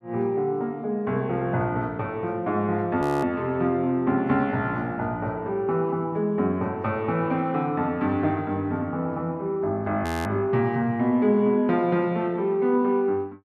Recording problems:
frozen audio; at 3 s and at 10 s

